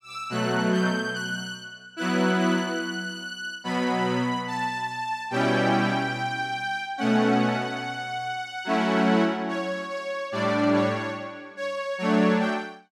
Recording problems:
none

